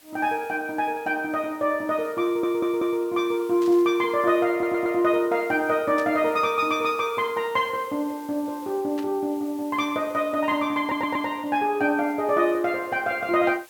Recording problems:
background hiss; slope 0 dB per octave, SNR 25 dB
audio stuttering; at 2 s, at 4.5 s and at 11 s
static burst; at 3.5 s, at 6 s and at 9 s; peak -13 dB vs average level

